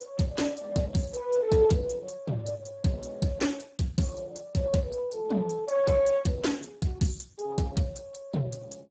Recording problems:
lossy codec; Speex, log-spectral distance 5 dB, nothing above 7.6 kHz

